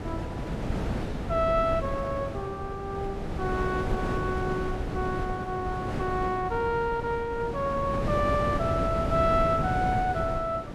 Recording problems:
wind noise; below 430 Hz, SNR 4 dB

